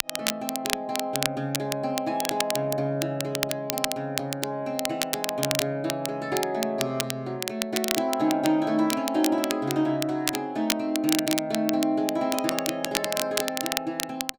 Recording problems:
crackle; vinyl, SNR 3 dB

